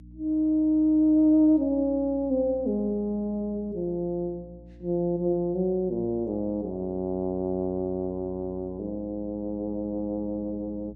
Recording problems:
electrical hum; 60 Hz, harmonics up to 300 Hz, SNR 21 dB

